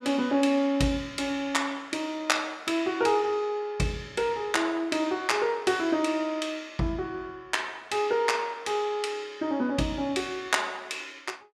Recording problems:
none

